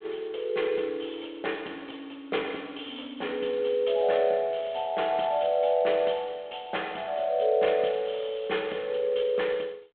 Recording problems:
phone line; 340 Hz to 3.4 kHz, G.726

